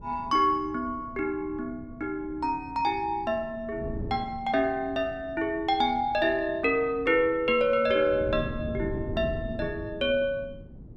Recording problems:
wind noise; below 240 Hz, SNR 14 dB

